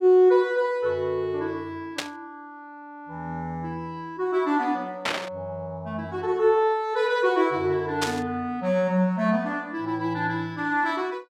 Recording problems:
burst of static; at 2 s, at 5 s and at 8 s; peak +3 dB vs average level

